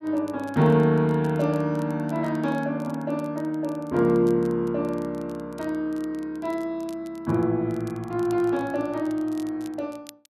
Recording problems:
crackling; vinyl, SNR 28 dB

